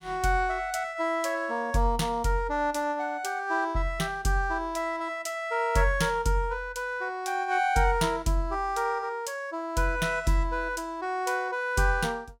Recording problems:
none

